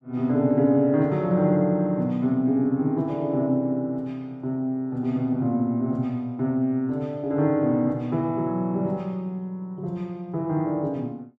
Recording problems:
none

